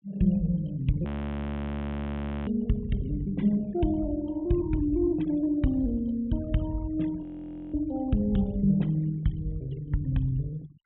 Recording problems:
treble cut off; nothing above 3.6 kHz
noise reduction artefacts; signal-to-artefact ratio 24 dB
audio freezing; at 1 s for 1.5 s and at 7 s for 0.5 s

